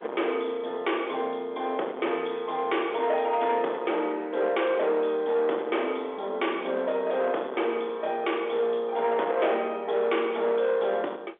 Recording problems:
phone line; 300 Hz to 3.5 kHz, G.711
distortion; soft clipping, signal-to-distortion ratio 11 dB

